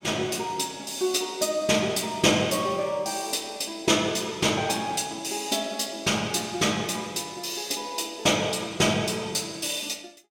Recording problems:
none

